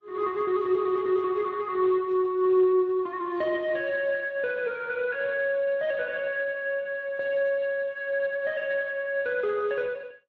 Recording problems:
lossy compression; Speex, then AAC, log-spectral distance 2 dB

